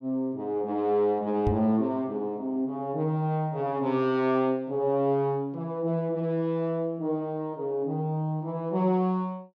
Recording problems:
microphone bump; at 1.5 s; peak +3 dB vs average level

